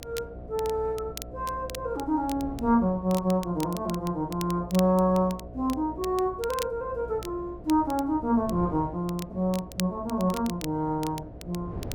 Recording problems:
hum; 60 Hz, harmonics up to 720 Hz, SNR 17 dB
wind noise; below 320 Hz, SNR 18 dB
crackling; vinyl, SNR 16 dB

